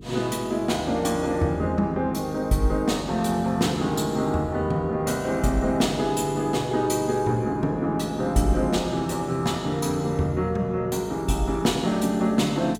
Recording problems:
hum; 50 Hz, harmonics up to 450 Hz, SNR 19 dB

